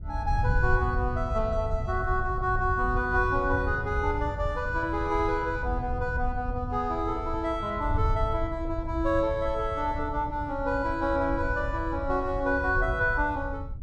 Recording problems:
wind noise; below 92 Hz, SNR 5 dB

